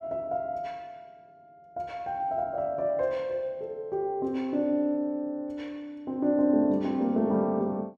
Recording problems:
none

